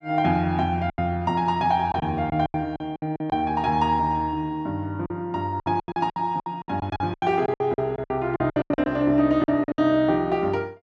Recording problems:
lost packets; 14% of the sound replaced, filled with silence

